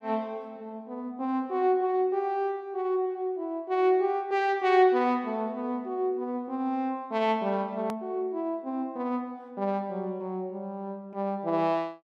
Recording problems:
click at an edit; at 8 s

